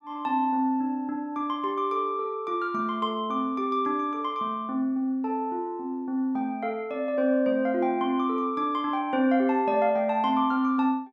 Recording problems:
none

